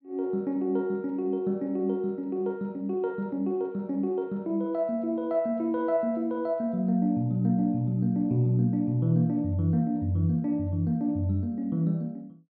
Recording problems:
none

